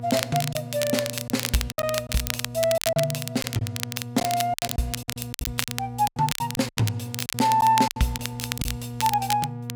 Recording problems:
hum; 60 Hz, harmonics up to 1.2 kHz, SNR 11 dB
crackling; vinyl, SNR 5 dB
lost packets; 12% of the sound replaced, filled with silence

